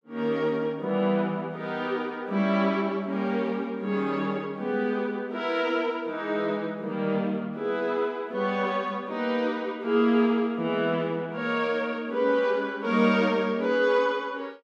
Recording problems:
none

